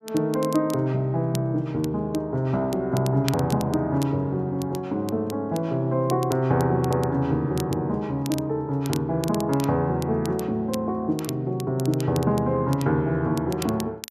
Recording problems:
crackling; vinyl, SNR 17 dB

